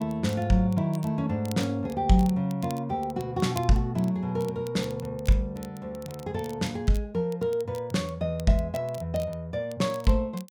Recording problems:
crackling; vinyl, SNR 22 dB

